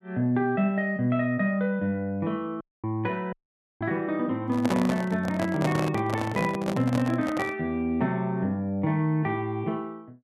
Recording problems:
audio cutting out; at 2.5 s and at 3.5 s
microphone handling noise; from 4.5 to 7.5 s; peak +3 dB vs average level

